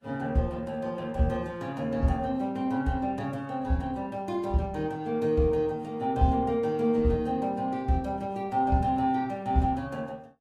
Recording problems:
lossy codec; Vorbis, then Opus, log-spectral distance 2 dB

